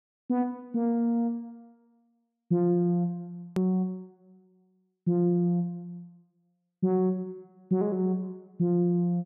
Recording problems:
hard cut with a click; at 3.5 s

